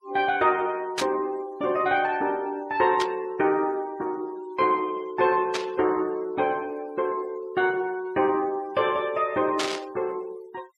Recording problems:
denoising artefacts; signal-to-artefact ratio 25 dB
burst of static; 4 times, first at 1 s; peak +2 dB vs average level

